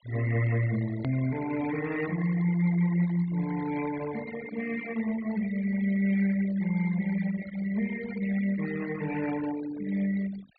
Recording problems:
treble missing; nothing above 4.5 kHz
denoising artefacts; signal-to-artefact ratio 14 dB
edit click; at 1 s

